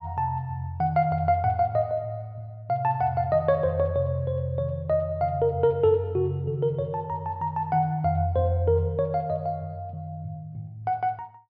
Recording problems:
none

